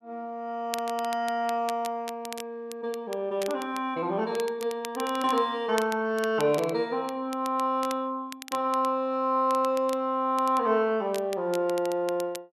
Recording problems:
crackle; vinyl, SNR 16 dB

